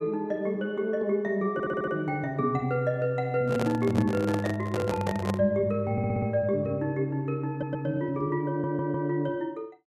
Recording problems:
stutter; 4 times, first at 1.5 s
microphone handling noise; from 3.5 to 5.5 s; peak +1 dB vs average level

